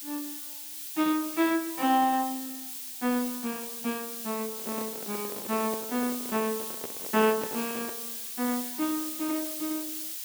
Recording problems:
background hiss; slope +5 dB per octave, SNR 5 dB
handling noise; from 4.5 to 8 s; peak -3 dB vs average level

